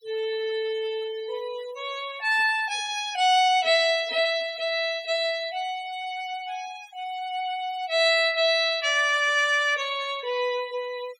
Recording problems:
denoising artefacts; signal-to-artefact ratio 19 dB

